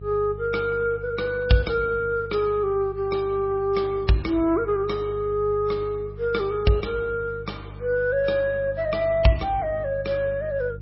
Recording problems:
lossy compression; MP3, log-spectral distance 2 dB, nothing above 5.5 kHz
hum; 50 Hz, harmonics up to 400 Hz, SNR 15 dB

